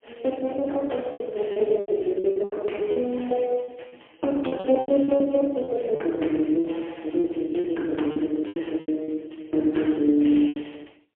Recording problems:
phone line; 240 Hz to 3.4 kHz, AMR-NB, then MP3
packet loss; 12% of the sound replaced, filled with repeated pitch periods

